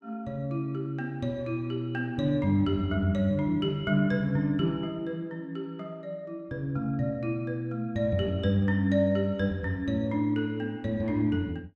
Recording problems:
none

